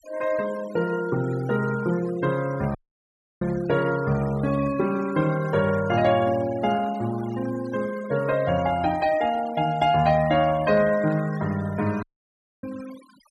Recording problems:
denoising artefacts; signal-to-artefact ratio 18 dB
audio cutting out; at 3 s for 0.5 s and at 12 s for 0.5 s

